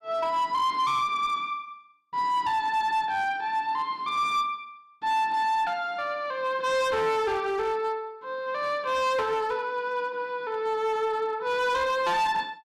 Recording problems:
distorted audio; hard clipping, signal-to-distortion ratio 11 dB

